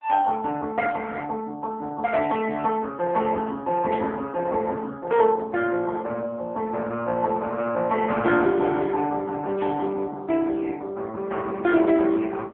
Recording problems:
telephone audio; 260 Hz to 3.2 kHz, AMR-NB
burst of static; at 4 s and at 9.5 s; peak -13 dB vs average level

